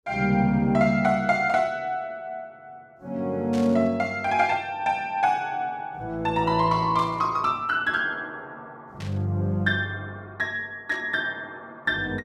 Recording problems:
static burst; 4 times, first at 3.5 s; peak -12 dB vs average level

